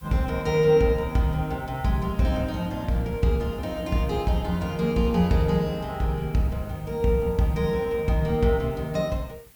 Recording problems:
background hiss; slope -1 dB per octave, SNR 27 dB

